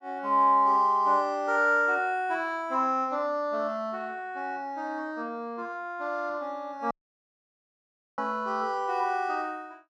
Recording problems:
dropout; at 7 s for 1.5 s

